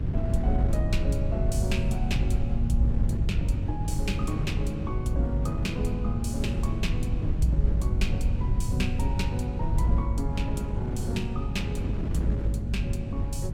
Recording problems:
mains hum; 50 Hz, harmonics up to 350 Hz, SNR 4 dB
low-frequency rumble; below 90 Hz, SNR 0 dB
wind on the microphone; below 230 Hz, SNR 5 dB

